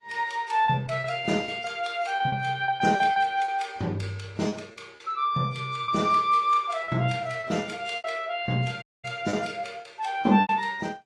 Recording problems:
lossy codec; AAC, log-spectral distance 3 dB
lost packets; 9% of the sound replaced, filled with repeated pitch periods
audio cutting out; at 9 s

